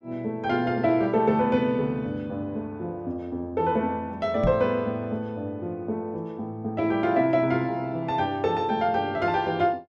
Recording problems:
knock on the microphone; at 4.5 s; peak +2 dB vs average level

